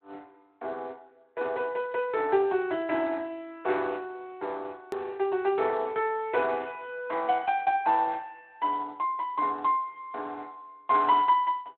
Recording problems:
telephone audio; 300 Hz to 3.2 kHz, Speex
click at an edit; at 5 s

